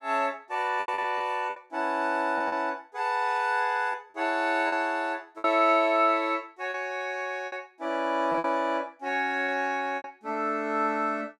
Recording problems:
lost packets; 7% of the sound replaced, filled with repeated pitch periods

